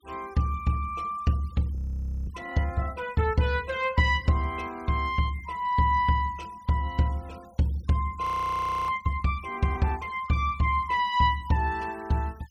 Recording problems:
noise reduction artefacts; signal-to-artefact ratio 26 dB
frozen audio; at 2 s for 0.5 s and at 8 s for 0.5 s

